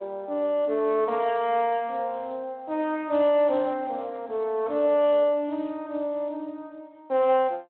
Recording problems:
phone line; 240 Hz to 3.5 kHz, Speex

